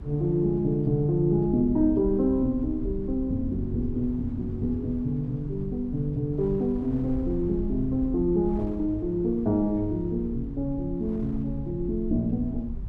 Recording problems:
electrical hum; 50 Hz, harmonics up to 400 Hz, SNR 20 dB
rumble; below 80 Hz, SNR 12 dB
wind noise; below 390 Hz, SNR 23 dB

